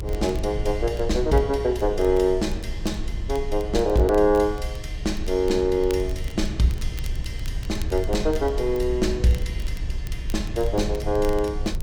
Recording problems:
rumble; below 68 Hz, strongest tone 22 Hz, SNR 8 dB
crackling; vinyl, SNR 24 dB

